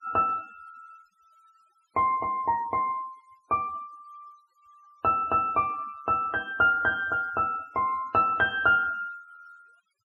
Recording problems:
denoising artefacts; signal-to-artefact ratio 27 dB

